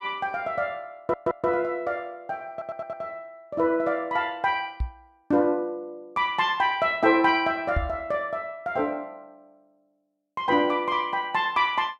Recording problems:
audio stuttering; at 1 s and at 2.5 s
knock on the microphone; at 5 s and at 8 s; peak +3 dB vs average level

